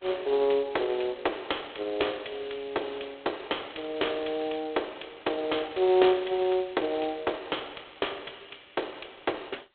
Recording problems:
telephone audio; 320 Hz to 3.8 kHz, G.726

